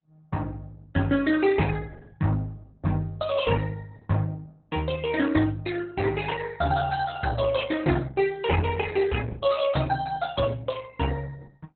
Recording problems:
lossy codec; Opus, log-spectral distance 4 dB, nothing above 4 kHz

